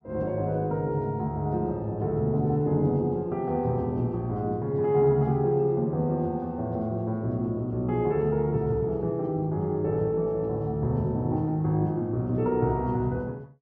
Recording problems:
none

